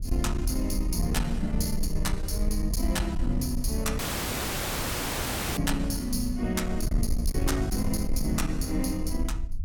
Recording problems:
distorted audio; soft clipping, signal-to-distortion ratio 13 dB
wind on the microphone; below 66 Hz, SNR 3 dB
dropout; at 4 s for 1.5 s

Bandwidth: 18 kHz